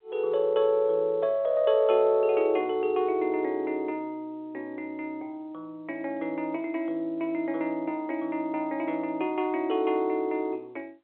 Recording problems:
phone line; 340 Hz to 3.6 kHz, G.711

